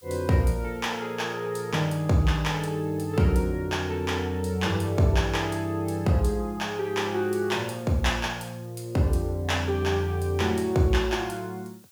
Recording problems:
hiss; slope +2 dB per octave, SNR 28 dB

